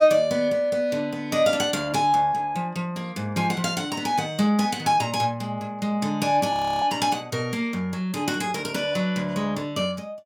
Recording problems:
frozen audio; at 6.5 s

